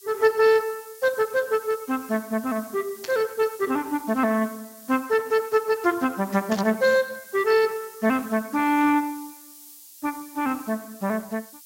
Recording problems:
codec artefacts; Speex, log-spectral distance 3 dB
background hiss; SNR 20 dB
static burst; at 3 s and at 6.5 s; peak -5 dB vs average level

